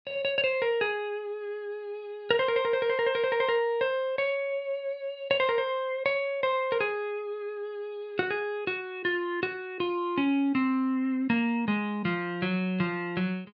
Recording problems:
none

